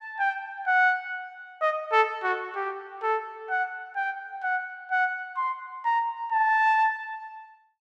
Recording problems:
none

